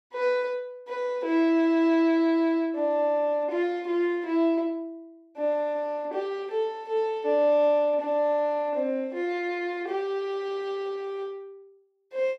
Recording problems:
none

